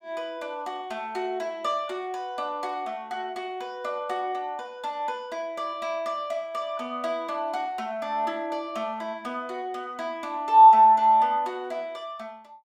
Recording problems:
none

